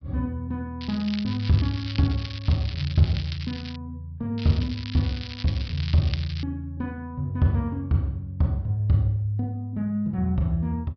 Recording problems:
low-pass filter; nothing above 5.5 kHz
crackle; from 1 to 4 s and from 4.5 to 6.5 s; loose cable, SNR 12 dB

